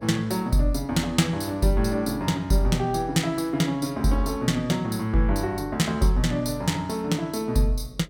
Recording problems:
electrical hum; 60 Hz, harmonics up to 660 Hz, SNR 26 dB

